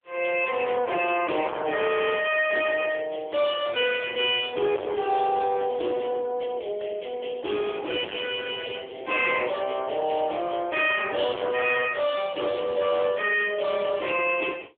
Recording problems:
telephone audio; 280 Hz to 3.4 kHz, AMR-NB
distorted audio; hard clipping, signal-to-distortion ratio 6 dB

